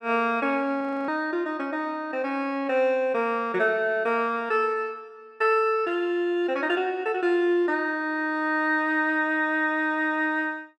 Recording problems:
frozen audio; at 1 s

